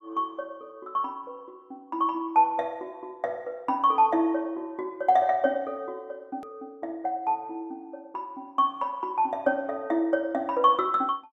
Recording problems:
click at an edit; at 6.5 s

